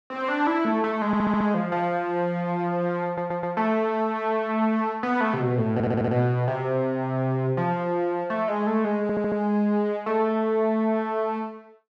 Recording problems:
audio stuttering; 4 times, first at 1 s

